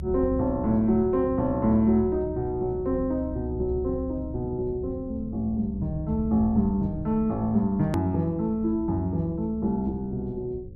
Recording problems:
hum; 60 Hz, harmonics up to 540 Hz, SNR 28 dB
rumble; below 120 Hz, strongest tone 68 Hz, SNR 11 dB
click at an edit; at 8 s

